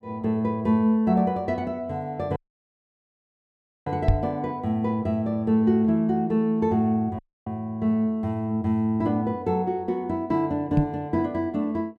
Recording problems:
dropout; at 2.5 s for 1.5 s and at 7 s
microphone bump; at 4 s and at 11 s; peak +7 dB vs average level

